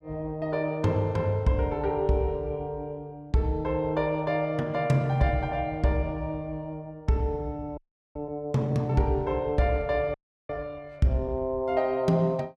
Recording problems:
audio freezing; at 8 s and at 10 s

